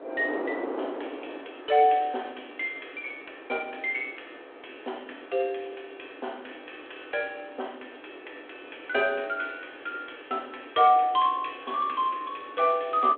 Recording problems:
phone line; 260 Hz to 3.4 kHz, G.726
wind noise; below 720 Hz, SNR 14 dB

